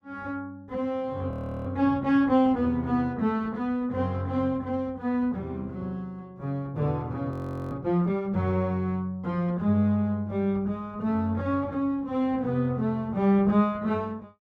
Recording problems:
audio freezing; at 1.5 s and at 7.5 s

